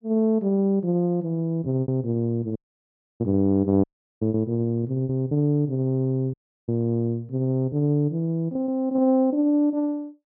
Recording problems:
lost packets; 4% of the sound replaced, filled with repeated pitch periods
audio cutting out; at 2.5 s for 0.5 s, at 4 s and at 6.5 s

